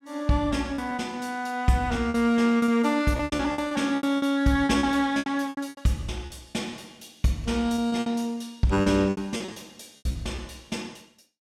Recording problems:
lost packets; 13% of the sound replaced, filled with repeated pitch periods

